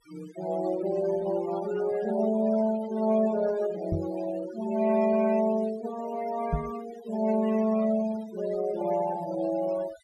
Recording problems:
noise reduction artefacts; signal-to-artefact ratio 15 dB
microphone thump; at 4 s and at 6.5 s; peak +2 dB vs average level

